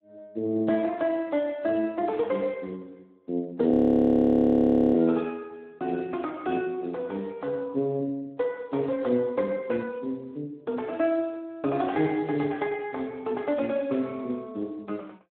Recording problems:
telephone audio; 170 Hz to 3.3 kHz, Speex
audio freezing; at 3.5 s for 1 s

